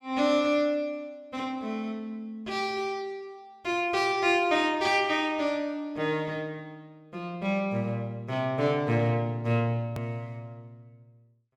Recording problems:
edit click; at 10 s

